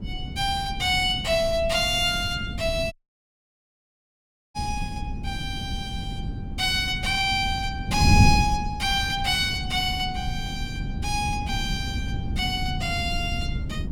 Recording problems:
wind on the microphone; below 170 Hz, SNR 5 dB
audio cutting out; at 3 s for 1.5 s

